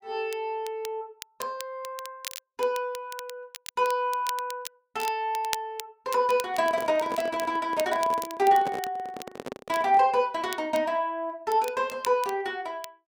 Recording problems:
crackling; vinyl, SNR 15 dB
handling noise; from 6.5 to 10 s; peak -4 dB vs average level

